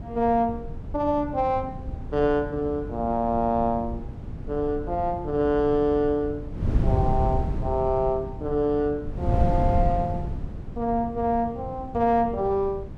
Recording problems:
wind noise; below 150 Hz, SNR 6 dB

